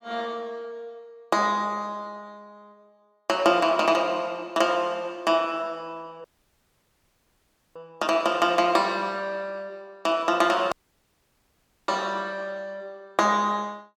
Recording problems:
dropout; at 6 s for 1.5 s and at 11 s for 1 s

